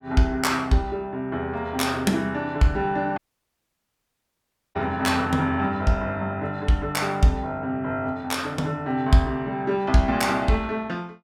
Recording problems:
audio cutting out; at 3 s for 1.5 s

